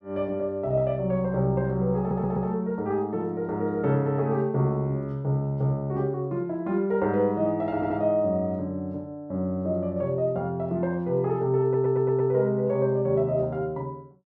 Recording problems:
audio stuttering; at 2 s, at 8 s and at 12 s

